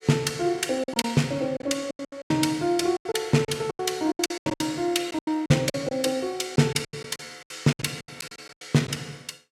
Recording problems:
packet loss; 16% of the sound replaced, filled with silence

